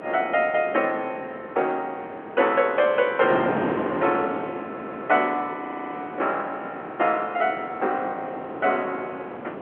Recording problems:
telephone audio; 280 Hz to 3.3 kHz, G.711
wind on the microphone; below 790 Hz, SNR 9 dB
audio stuttering; at 4.5 s and at 5.5 s

